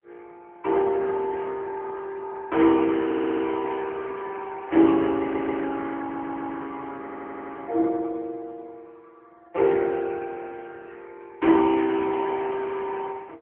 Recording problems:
telephone audio; 280 Hz to 3.3 kHz, AMR-NB
stutter; 4 times, first at 3 s

